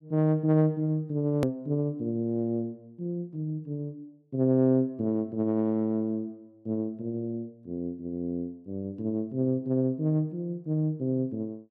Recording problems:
click at an edit; at 1.5 s

